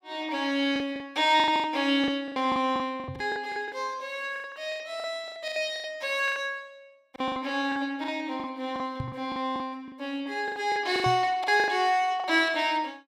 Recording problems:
lost packets; 16% of the sound replaced, filled with the last packet
knock on the microphone; at 3 s, at 9 s and at 11 s; peak -2 dB vs average level

